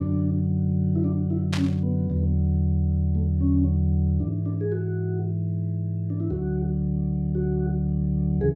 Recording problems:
burst of static; at 1.5 s; peak -2 dB vs average level

